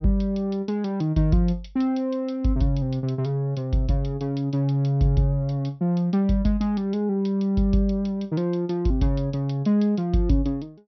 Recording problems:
treble cut off; nothing above 5.9 kHz

